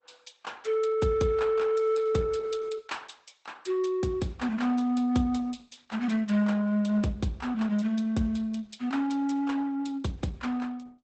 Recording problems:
lossy codec; Opus, log-spectral distance 3 dB, nothing above 8 kHz

